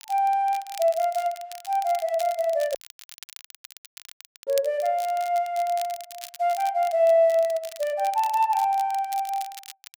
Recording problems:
crackling; vinyl, SNR 18 dB
dropout; at 3 s for 1.5 s

